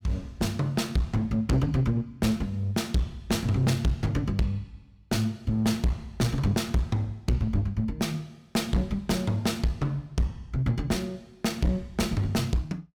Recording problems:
distortion; hard clipping, uneven, signal-to-distortion ratio 6 dB

